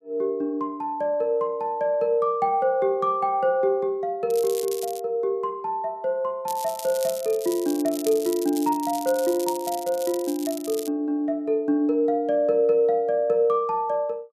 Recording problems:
crackling; at 4.5 s and from 6.5 to 11 s; loose cable, SNR 13 dB

